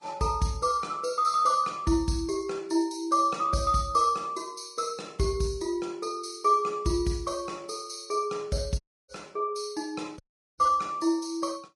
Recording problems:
lossy codec; Vorbis, log-spectral distance 3 dB, nothing above 10.7 kHz
audio cutting out; at 9 s and at 10 s

